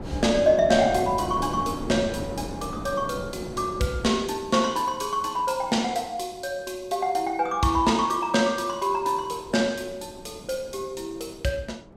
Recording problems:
wind noise; below 490 Hz, SNR 12 dB

